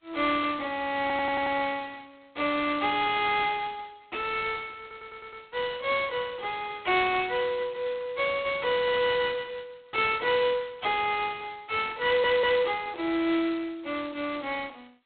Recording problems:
telephone audio; 280 Hz to 3.9 kHz, G.726
stutter; at 1 s, at 5 s and at 12 s

